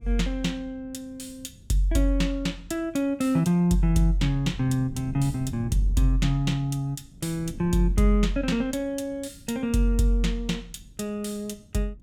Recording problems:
wind on the microphone; below 190 Hz, SNR 19 dB

